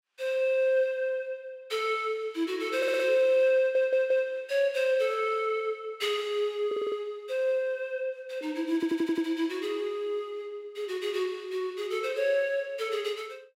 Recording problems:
audio stuttering; 4 times, first at 3 s

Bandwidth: 16 kHz